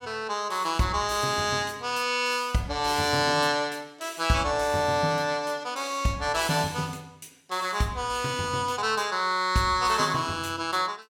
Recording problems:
none

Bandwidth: 17 kHz